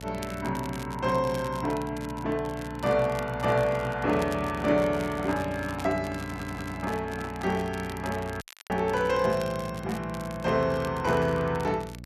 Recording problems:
electrical hum; 60 Hz, harmonics up to 600 Hz, SNR 14 dB
crackling; vinyl, SNR 19 dB
handling noise; from 3.5 to 8 s; peak -7 dB vs average level
stutter; at 6 s
audio cutting out; at 8.5 s

